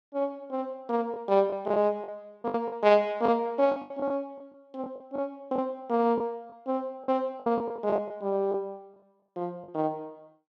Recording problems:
lost packets; 9% of the sound replaced, filled with the last packet

